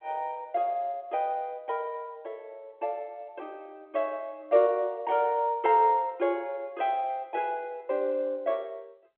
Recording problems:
telephone audio; 240 Hz to 3.5 kHz, G.711

